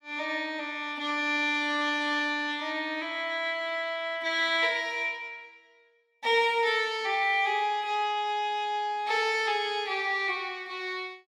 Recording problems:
none

